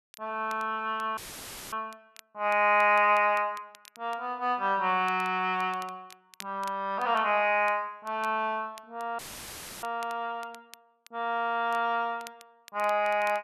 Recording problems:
crackling; vinyl, SNR 25 dB
dropout; at 1 s for 0.5 s and at 9 s for 0.5 s; filled with static

